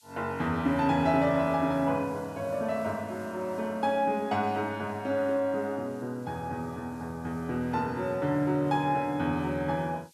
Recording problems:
background hiss; slope +8 dB per octave, SNR 29 dB

